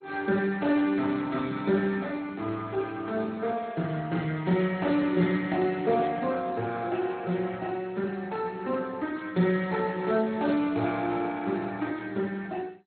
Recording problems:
codec artefacts; Speex, then MP2, log-spectral distance 4 dB, nothing above 4.2 kHz

